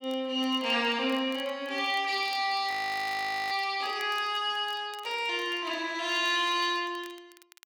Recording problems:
crackle; vinyl, SNR 26 dB
audio freezing; at 2.5 s for 1 s

